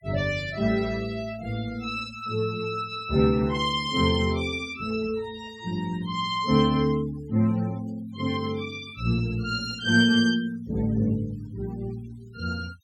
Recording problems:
noise reduction artefacts; signal-to-artefact ratio 22 dB

